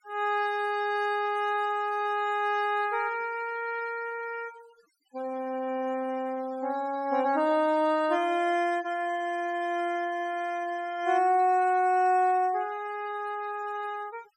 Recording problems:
noise reduction artefacts; signal-to-artefact ratio 21 dB

